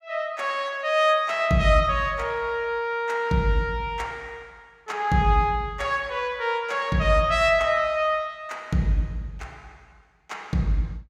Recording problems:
none

